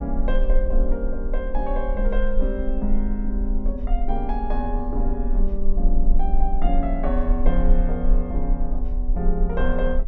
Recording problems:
rumble; below 36 Hz, strongest tone 20 Hz, SNR -2 dB

